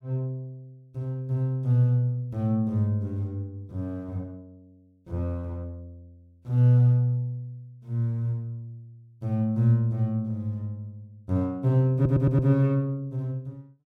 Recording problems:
audio stuttering; at 12 s

